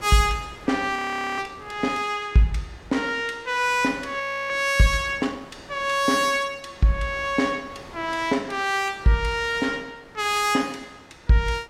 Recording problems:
wind on the microphone; below 1.4 kHz, SNR 23 dB
frozen audio; at 1 s and at 4 s

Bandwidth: 16.5 kHz